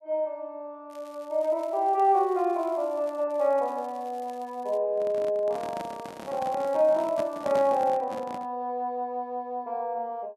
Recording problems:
crackle; from 1 to 3 s, from 3.5 to 5 s and from 5.5 to 8 s; loose cable, SNR 29 dB
microphone handling noise; from 5 to 8.5 s; peak -5 dB vs average level

